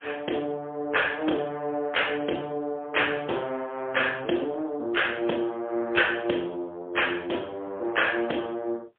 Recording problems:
phone line; 260 Hz to 3.4 kHz, AMR-NB, then MP3

